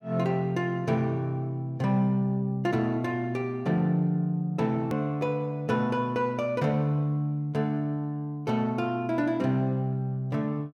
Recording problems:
edit click; at 5 s

